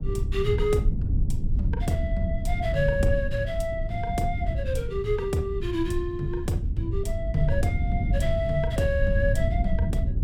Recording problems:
low-frequency rumble; below 96 Hz, SNR 0 dB

